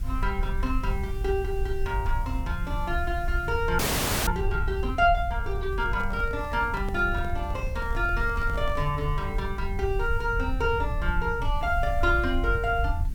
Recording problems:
background hiss; SNR 25 dB
low-frequency rumble; below 70 Hz, SNR 3 dB
frozen audio; at 4 s
microphone handling noise; from 5.5 to 9 s; peak -8 dB vs average level

